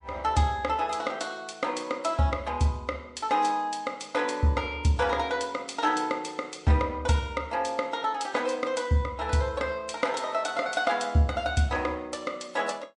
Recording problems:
lossy compression; MP3, log-spectral distance 2 dB, nothing above 9.5 kHz

